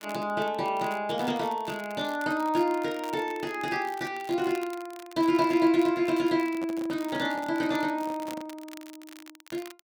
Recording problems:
crackling; vinyl, SNR 20 dB
handling noise; from 6.5 to 8.5 s; peak -7 dB vs average level

